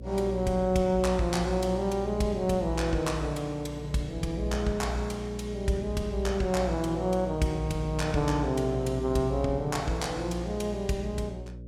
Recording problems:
electrical hum; 60 Hz, harmonics up to 600 Hz, SNR 9 dB

